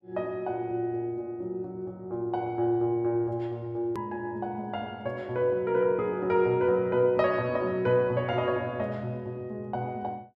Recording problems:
click at an edit; at 4 s

